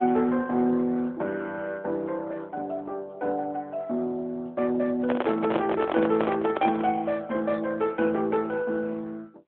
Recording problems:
phone line; 190 Hz to 3.6 kHz, AMR-NB
microphone handling noise; from 5 to 7 s; peak +3 dB vs average level

